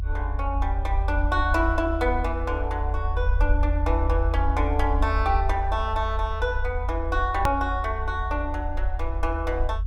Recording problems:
rumble; below 78 Hz, strongest tone 48 Hz, SNR 0 dB
click at an edit; at 7.5 s

